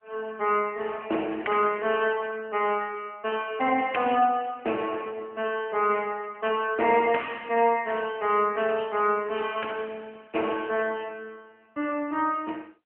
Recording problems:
phone line; 240 Hz to 3 kHz, AMR-NB

